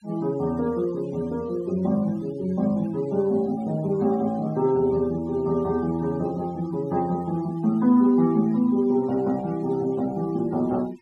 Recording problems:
denoising artefacts; signal-to-artefact ratio 24 dB

